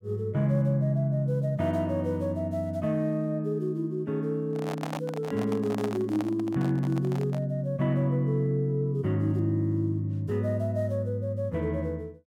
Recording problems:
handling noise; from 4.5 to 7.5 s; peak -3 dB vs average level

